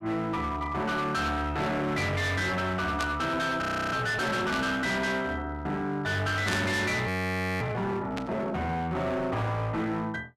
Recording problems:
distorted audio; hard clipping, signal-to-distortion ratio 7 dB
static burst; 4 times, first at 3 s; peak -1 dB vs average level
frozen audio; at 3.5 s and at 7 s for 0.5 s

